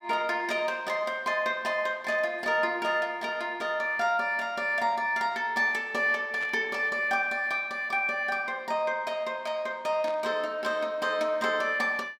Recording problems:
burst of static; at 2 s, at 6.5 s and at 10 s; peak -11 dB vs average level

